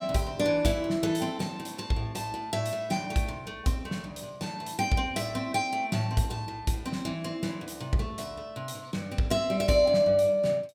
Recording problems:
none

